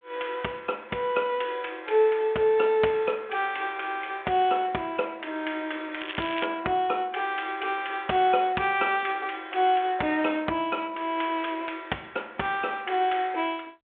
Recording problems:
telephone audio; 220 Hz to 3.4 kHz, G.726
crackling; at 6 s; loose cable, SNR 10 dB

